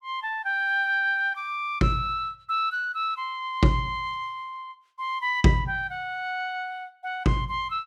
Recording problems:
none

